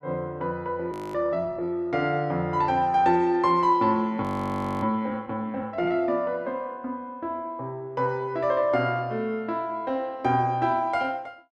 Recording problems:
audio freezing; at 1 s and at 4 s for 0.5 s

